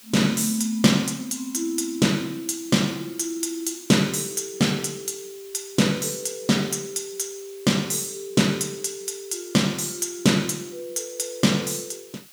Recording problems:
background hiss; slope +2 dB per octave, SNR 22 dB

